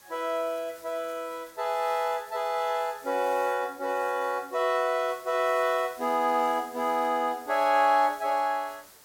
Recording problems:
background hiss; slope -1 dB per octave, SNR 23 dB

